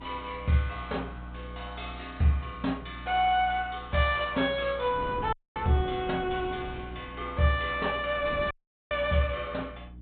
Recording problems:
low-pass filter; nothing above 4 kHz
hum; 60 Hz, harmonics up to 300 Hz, SNR 16 dB
wind noise; below 330 Hz, SNR 15 dB
dropout; at 5.5 s and at 8.5 s

